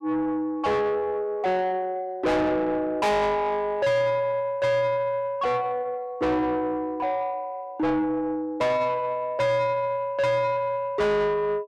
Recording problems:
distortion; soft clipping, signal-to-distortion ratio 6 dB

